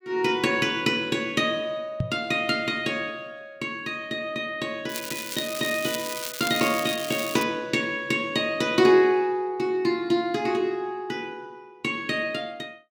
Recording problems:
microphone thump; at 2 s; peak +2 dB vs average level
crackle; from 5 to 7.5 s; loose cable, SNR 8 dB

